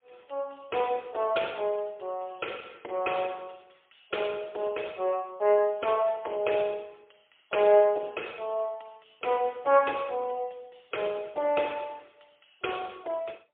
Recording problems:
phone line; 340 Hz to 3.4 kHz, AMR-NB, then MP3

